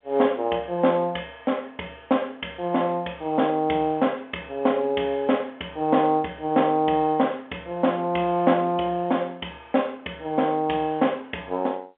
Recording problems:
telephone audio; 280 Hz to 3.4 kHz, G.711

